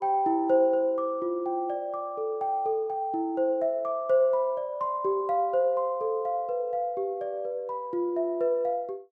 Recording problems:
none

